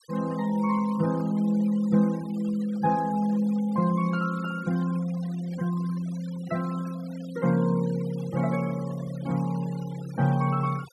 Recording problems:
denoising artefacts; signal-to-artefact ratio 21 dB

